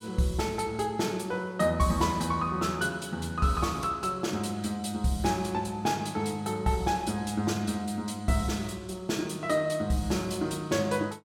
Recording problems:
none

